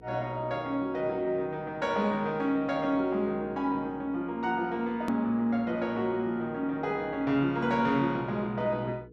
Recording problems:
hum; 60 Hz, harmonics up to 480 Hz, SNR 24 dB
edit click; at 5 s

